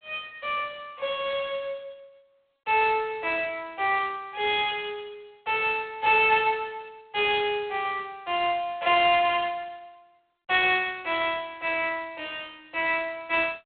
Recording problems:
phone line; 340 Hz to 3.6 kHz, G.726

